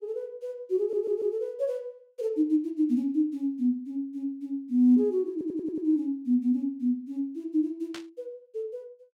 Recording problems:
stutter; at 1 s and at 5.5 s
static burst; at 8 s; peak -8 dB vs average level

